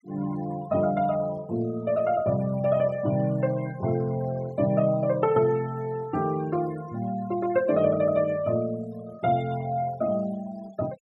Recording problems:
denoising artefacts; signal-to-artefact ratio 22 dB

